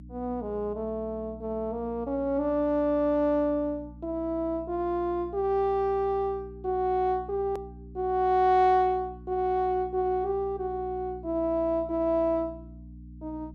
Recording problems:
hum; 60 Hz, harmonics up to 300 Hz, SNR 18 dB
edit click; at 7.5 s

